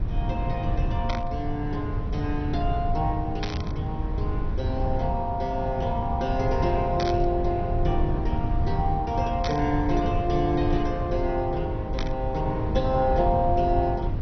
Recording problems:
lossy codec; MP2, log-spectral distance 2 dB, nothing above 6 kHz
rumble; below 120 Hz, SNR 2 dB
burst of static; 5 times, first at 1 s; peak -1 dB vs average level

